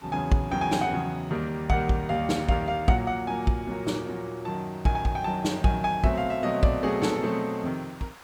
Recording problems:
hiss; SNR 23 dB

